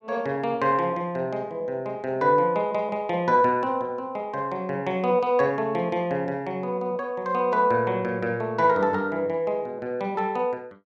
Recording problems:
none

